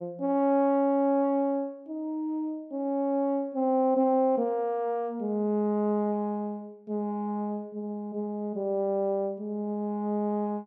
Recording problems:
none

